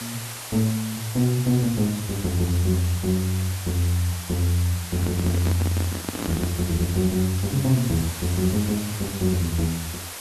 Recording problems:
hiss; slope -1 dB per octave, SNR 9 dB
handling noise; from 5 to 6.5 s; peak -1 dB vs average level

